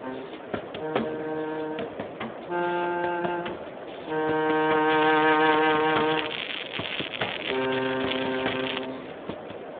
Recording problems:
phone line; 260 Hz to 3.4 kHz, Speex
hiss; SNR 14 dB
wind on the microphone; below 980 Hz, SNR 21 dB
crackling; from 5 to 7 s and from 7 to 9 s; loose cable, SNR 4 dB

